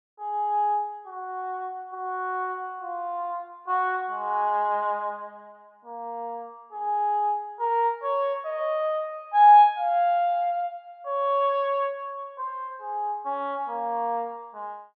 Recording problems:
none

